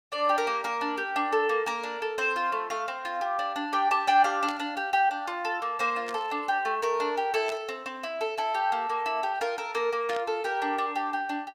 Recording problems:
static burst; 4 times, first at 4.5 s; peak -7 dB vs average level

